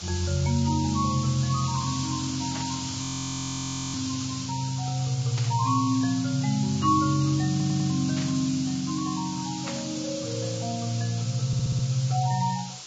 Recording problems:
lossy compression; Vorbis, log-spectral distance 14 dB
hiss; SNR 8 dB
static burst; 4 times, first at 2.5 s; peak -5 dB vs average level
frozen audio; at 3 s for 1 s
audio stuttering; at 7.5 s and at 11 s

